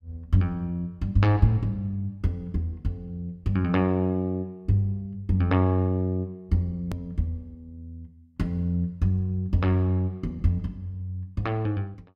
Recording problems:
click at an edit; at 7 s

